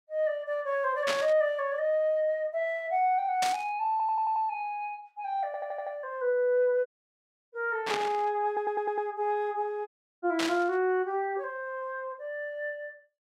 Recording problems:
static burst; 4 times, first at 1 s; peak +2 dB vs average level
audio stuttering; at 4 s, at 5.5 s and at 8.5 s
audio cutting out; at 7 s for 0.5 s and at 10 s

